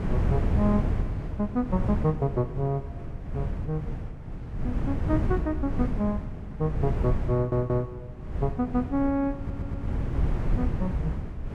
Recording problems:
wind noise; below 150 Hz, SNR 2 dB
stutter; at 7.5 s and at 9.5 s

